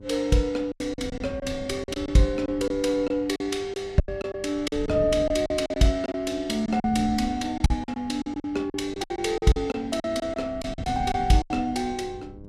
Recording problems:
hum; 50 Hz, harmonics up to 1.1 kHz, SNR 22 dB
wind noise; below 190 Hz, SNR 15 dB
packet loss; 12% of the sound replaced, filled with silence

